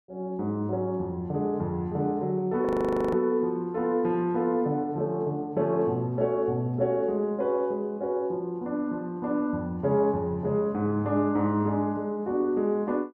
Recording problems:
audio freezing; at 2.5 s

